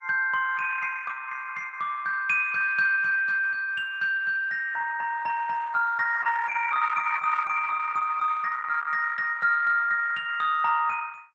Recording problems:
lossy codec; Opus, log-spectral distance 4 dB, nothing above 6.9 kHz

